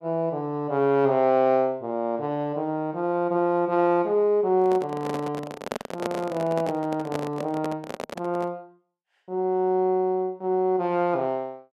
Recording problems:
microphone handling noise; from 4.5 to 8.5 s; peak -1 dB vs average level

